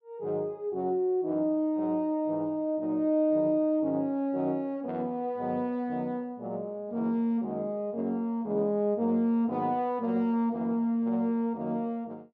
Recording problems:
none

